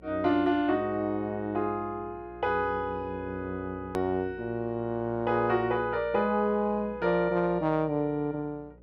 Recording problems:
hum; 60 Hz, harmonics up to 600 Hz, SNR 22 dB
click at an edit; at 4 s

